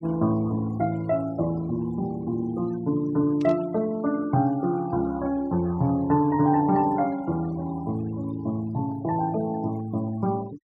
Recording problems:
denoising artefacts; signal-to-artefact ratio 22 dB
static burst; at 3.5 s; peak -17 dB vs average level

